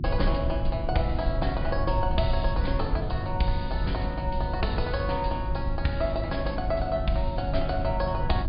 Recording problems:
low-pass filter; nothing above 5 kHz
hum; 50 Hz, harmonics up to 350 Hz, SNR 6 dB
low-frequency rumble; below 82 Hz, SNR 2 dB

